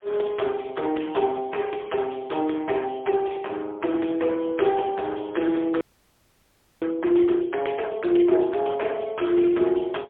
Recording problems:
telephone audio; 280 Hz to 3.4 kHz, AMR-NB, then MP3
audio freezing; at 6 s for 1 s

